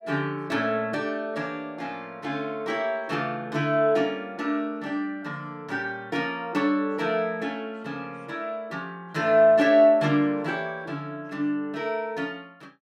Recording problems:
none

